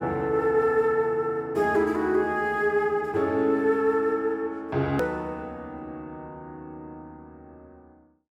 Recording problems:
hard cut with a click; at 5 s

